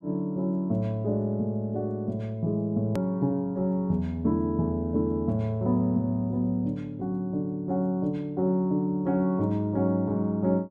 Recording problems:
click at an edit; at 3 s

